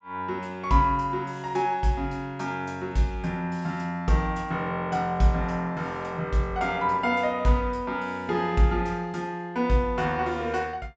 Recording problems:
low-pass filter; nothing above 8 kHz

